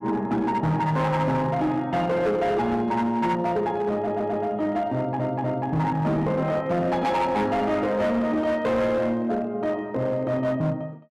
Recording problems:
distorted audio; hard clipping, signal-to-distortion ratio 11 dB
stutter; at 4 s and at 5 s

